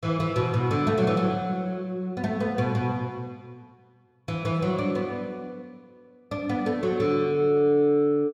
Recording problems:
none

